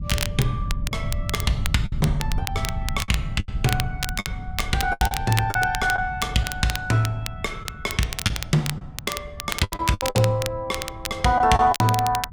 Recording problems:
low-frequency rumble; below 110 Hz, SNR 9 dB
crackling; vinyl, SNR 8 dB
lost packets; 8% of the sound replaced, filled with the last packet

